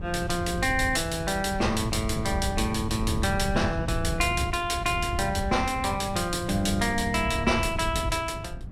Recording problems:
wind on the microphone; below 130 Hz, SNR 7 dB

